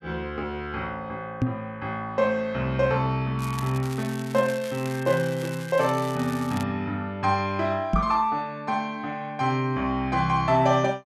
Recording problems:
microphone thump; at 1.5 s and at 8 s; peak +5 dB vs average level
crackling; from 3.5 to 6.5 s; loose cable, SNR 16 dB

